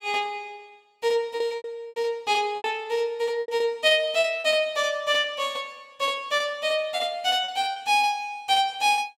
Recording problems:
packet loss; 8% of the sound replaced, filled with repeated pitch periods

